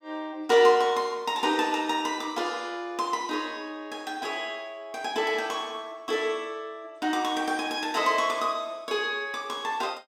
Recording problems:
none

